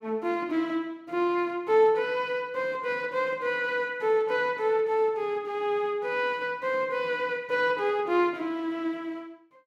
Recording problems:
none

